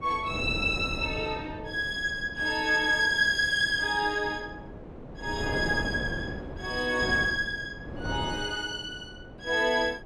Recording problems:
wind on the microphone; below 500 Hz, SNR 11 dB

